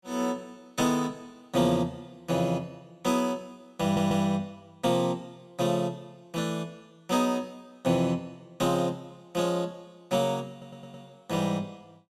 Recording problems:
stutter; at 4 s and at 11 s

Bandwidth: 14.5 kHz